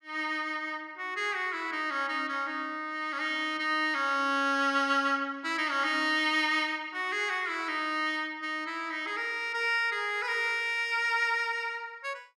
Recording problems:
none

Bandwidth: 14.5 kHz